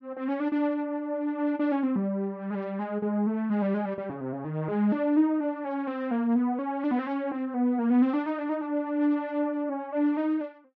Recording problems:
none

